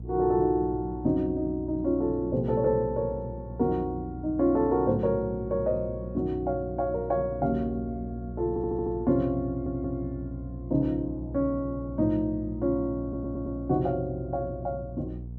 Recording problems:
electrical hum; 60 Hz, harmonics up to 480 Hz, SNR 11 dB
stutter; at 8.5 s, at 9.5 s and at 13 s

